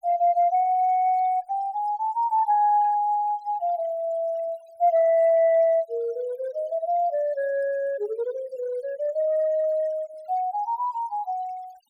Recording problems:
noise reduction artefacts; signal-to-artefact ratio 27 dB

